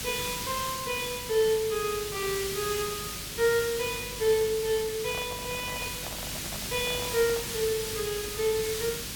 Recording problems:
mains hum; 50 Hz, harmonics up to 600 Hz, SNR 18 dB
background hiss; SNR 4 dB
crackling; from 1.5 to 4.5 s and from 5.5 to 7.5 s; loose cable, SNR 27 dB
handling noise; from 5 to 7.5 s; peak -7 dB vs average level

